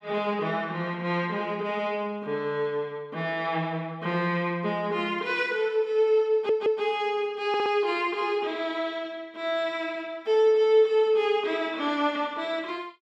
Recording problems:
stutter; at 6.5 s and at 7.5 s

